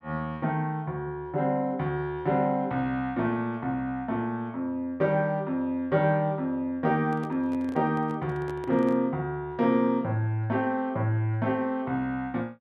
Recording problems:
microphone handling noise; from 7 to 9 s; peak -9 dB vs average level

